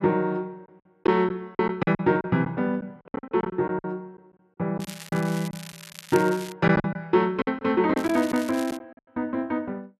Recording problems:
lost packets; 9% of the sound replaced, filled with silence
crackle; from 5 to 6.5 s and at 8 s; loose cable, SNR 16 dB

